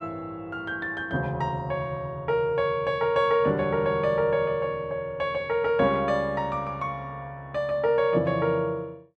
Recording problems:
none

